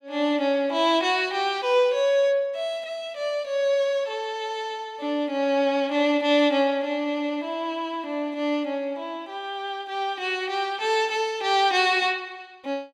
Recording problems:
none

